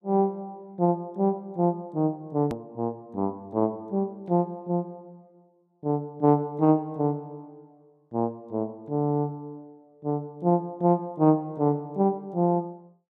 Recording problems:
hard cut with a click; at 2.5 s

